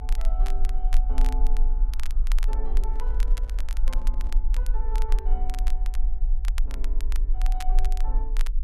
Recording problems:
low-frequency rumble; below 36 Hz, strongest tone 18 Hz, SNR -15 dB
crackling; vinyl, SNR 3 dB
microphone handling noise; from 3 to 4.5 s; peak -5 dB vs average level

